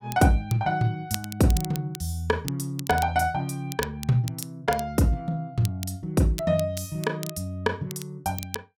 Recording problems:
crackle; vinyl, SNR 13 dB

